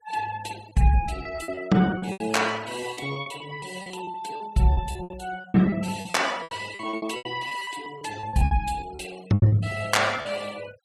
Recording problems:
noise reduction artefacts; signal-to-artefact ratio 19 dB
packet loss; 18% of the sound replaced, filled with repeated pitch periods

